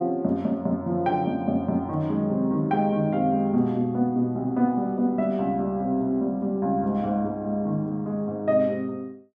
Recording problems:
none

